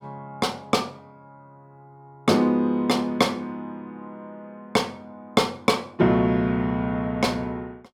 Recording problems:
none

